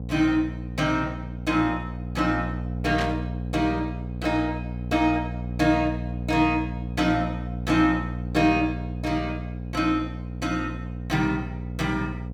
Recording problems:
hum; 60 Hz, harmonics up to 720 Hz, SNR 7 dB
static burst; at 3 s; peak -3 dB vs average level

